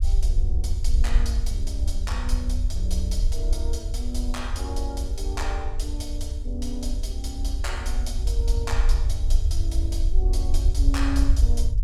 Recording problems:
rumble; below 58 Hz, SNR -8 dB

